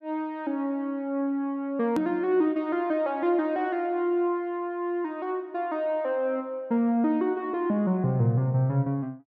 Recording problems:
edit click; at 2 s

